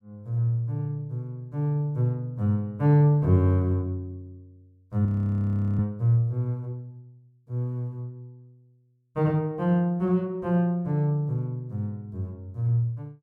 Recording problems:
frozen audio; at 5 s for 0.5 s

